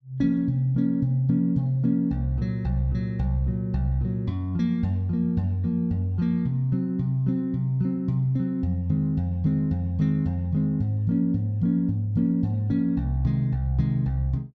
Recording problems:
none

